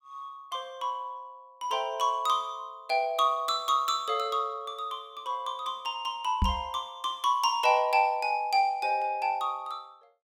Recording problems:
microphone bump; at 6.5 s; peak +5 dB vs average level

